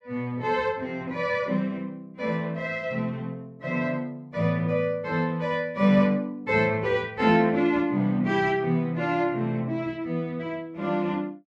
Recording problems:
none

